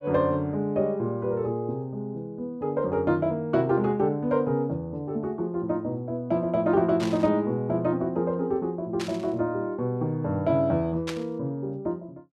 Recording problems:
burst of static; at 7 s, at 9 s and at 11 s; peak -3 dB vs average level

